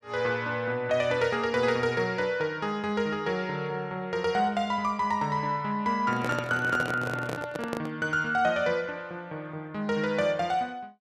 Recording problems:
microphone handling noise; from 6 to 8 s; peak -1 dB vs average level

